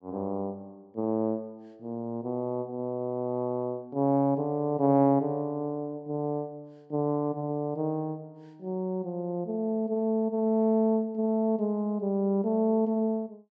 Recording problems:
treble cut off; nothing above 8 kHz

